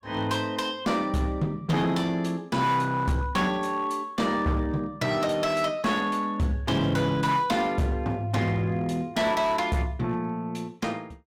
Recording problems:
distortion; hard clipping, uneven, signal-to-distortion ratio 11 dB

